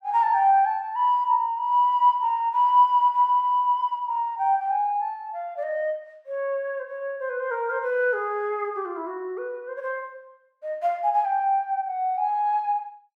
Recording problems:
none

